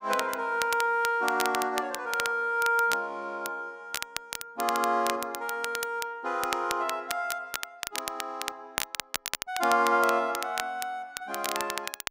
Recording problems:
crackle; vinyl, SNR 7 dB

